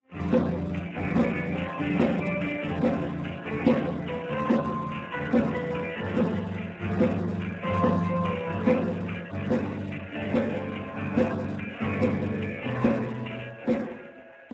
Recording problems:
lossy codec; MP3, then Speex, log-spectral distance 8 dB

